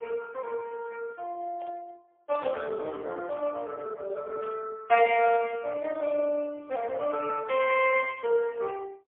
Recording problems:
telephone audio; 260 Hz to 2.8 kHz, AMR-NB, then MP3
static burst; at 1.5 s, at 4.5 s and at 6 s; peak -17 dB vs average level

